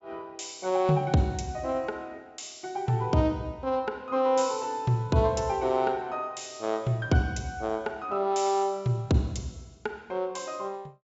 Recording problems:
treble cut off; nothing above 8 kHz

